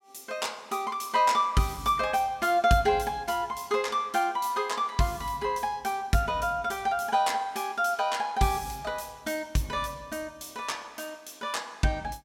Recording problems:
none

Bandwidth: 16.5 kHz